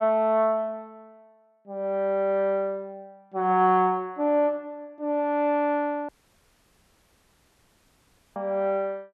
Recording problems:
audio cutting out; at 6 s for 2.5 s

